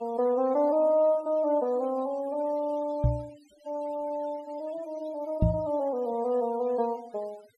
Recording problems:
noise reduction artefacts; signal-to-artefact ratio 24 dB
knock on the microphone; at 3 s and at 5.5 s; peak +7 dB vs average level

